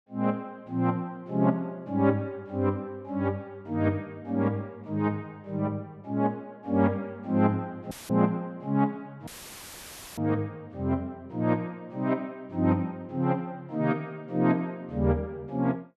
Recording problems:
audio cutting out; at 8 s and at 9.5 s for 1 s; filled with static

